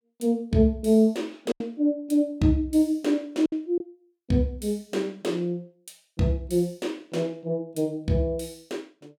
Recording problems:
packet loss; 2% of the sound replaced, filled with silence

